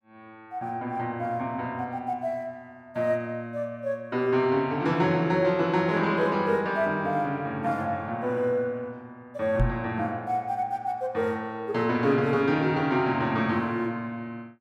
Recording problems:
knock on the microphone; at 9.5 s; peak +5 dB vs average level

